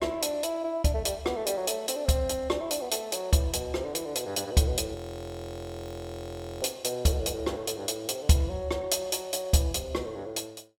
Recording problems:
audio freezing; at 5 s for 1.5 s

